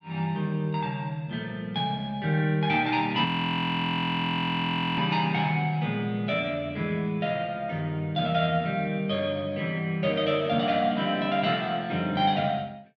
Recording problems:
frozen audio; at 3.5 s for 1.5 s

